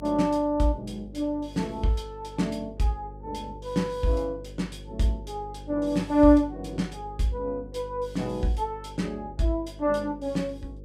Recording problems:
hum; 50 Hz, harmonics up to 550 Hz, SNR 17 dB

